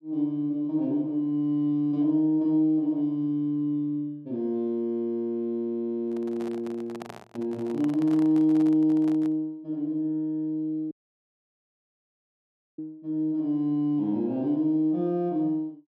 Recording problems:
microphone handling noise; from 6 to 9.5 s; peak -10 dB vs average level
audio cutting out; at 11 s for 2 s

